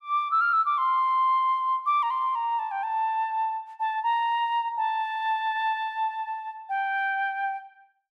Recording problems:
none

